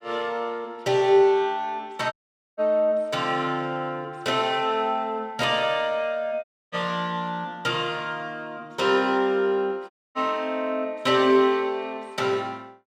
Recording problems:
audio cutting out; at 2 s, at 6.5 s and at 10 s

